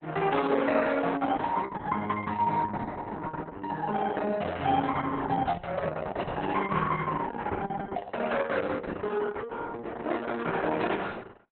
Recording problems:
codec artefacts; Opus, log-spectral distance 4 dB, nothing above 3.8 kHz
microphone bump; at 7.5 s; peak -3 dB vs average level

